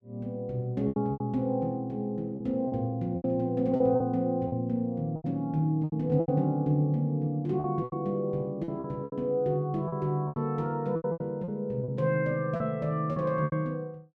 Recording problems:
lost packets; 11% of the sound replaced, filled with repeated pitch periods

